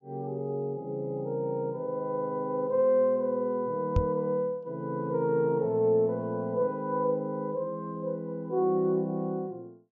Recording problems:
treble missing; nothing above 8 kHz
knock on the microphone; at 4 s; peak +6 dB vs average level

